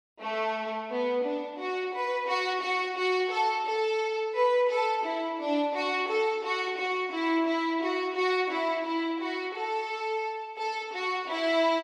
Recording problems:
none

